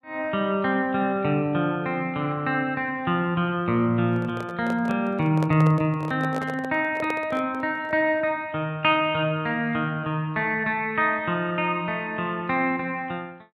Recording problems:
microphone handling noise; from 4 to 8 s; peak -3 dB vs average level

